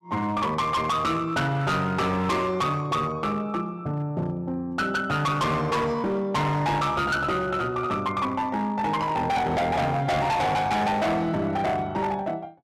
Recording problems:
distorted audio; hard clipping, signal-to-distortion ratio 7 dB

